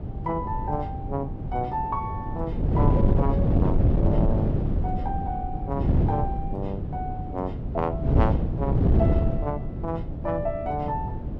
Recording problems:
wind noise; below 200 Hz, SNR -5 dB

